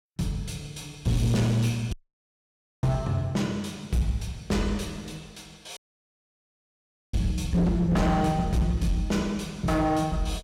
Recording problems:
distorted audio; hard clipping, signal-to-distortion ratio 6 dB
dropout; at 2 s for 1 s and at 6 s for 1.5 s

